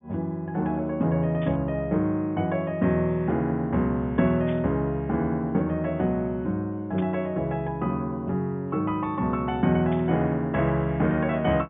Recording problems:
low-pass filter; nothing above 3.6 kHz
static burst; 4 times, first at 1.5 s; peak -12 dB vs average level

